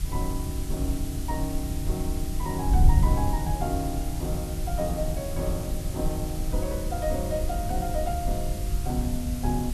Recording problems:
hiss; slope +2 dB per octave, SNR 9 dB
wind noise; below 84 Hz, SNR -2 dB

